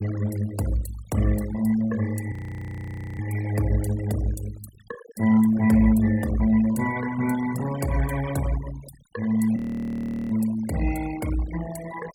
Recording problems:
denoising artefacts; signal-to-artefact ratio 15 dB
audio freezing; at 2.5 s for 1 s and at 9.5 s for 0.5 s

